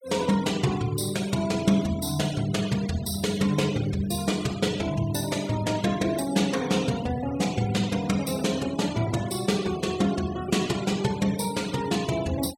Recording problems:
denoising artefacts; signal-to-artefact ratio 16 dB

